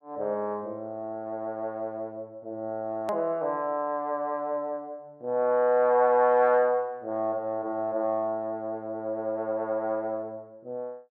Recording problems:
edit click; at 3 s

